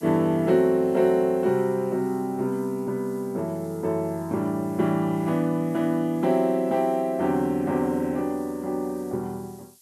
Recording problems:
hiss; SNR 27 dB

